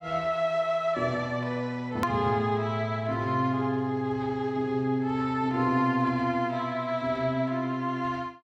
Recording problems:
click at an edit; at 2 s

